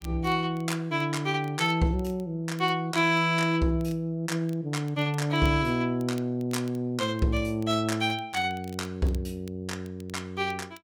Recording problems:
crackle; vinyl, SNR 28 dB

